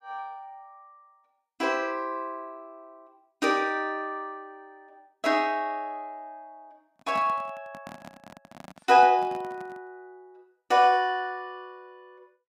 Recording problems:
handling noise; from 7 to 10 s; peak -10 dB vs average level

